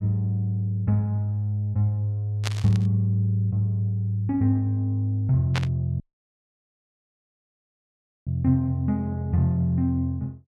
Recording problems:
static burst; at 2.5 s and at 5.5 s; peak -1 dB vs average level
audio cutting out; at 6 s for 2.5 s

